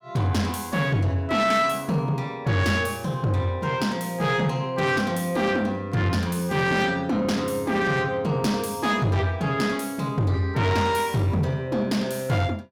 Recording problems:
distorted audio; soft clipping, signal-to-distortion ratio 11 dB

